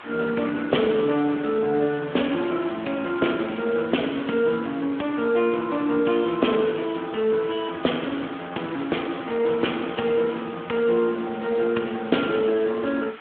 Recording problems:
phone line; 190 Hz to 3.4 kHz, Speex
background hiss; SNR 17 dB

